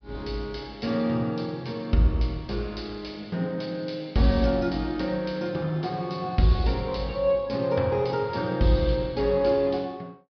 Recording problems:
treble missing; nothing above 5.5 kHz

